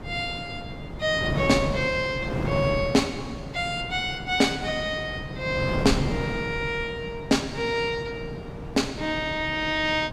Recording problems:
wind on the microphone; below 420 Hz, SNR 7 dB

